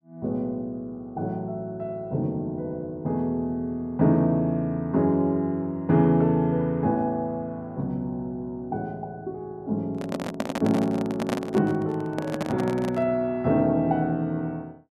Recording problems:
microphone handling noise; from 10 to 13 s; peak +3 dB vs average level

